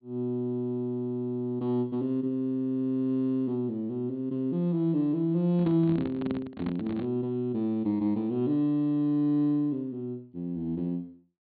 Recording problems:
treble missing; nothing above 4.5 kHz
handling noise; from 5.5 to 7 s; peak -2 dB vs average level

